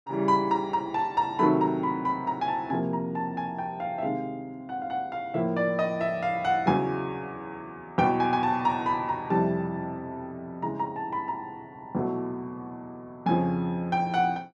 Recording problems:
none

